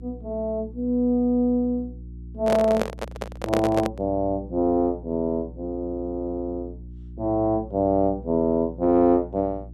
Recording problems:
electrical hum; 60 Hz, harmonics up to 360 Hz, SNR 16 dB
microphone handling noise; from 2.5 to 4 s; peak +3 dB vs average level

